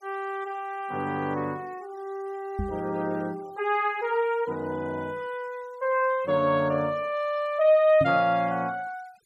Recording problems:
noise reduction artefacts; signal-to-artefact ratio 27 dB
microphone bump; at 2.5 s and at 8 s; peak 0 dB vs average level

